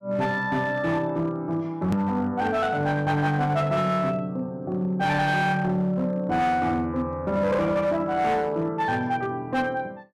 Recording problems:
distortion; hard clipping, signal-to-distortion ratio 12 dB
click at an edit; at 2 s

